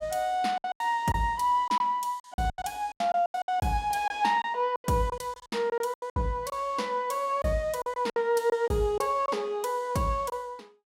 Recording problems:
lost packets; 12% of the sound replaced, filled with silence

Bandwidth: 16 kHz